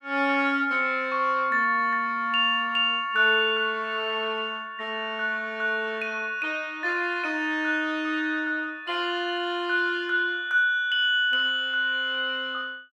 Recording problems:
none

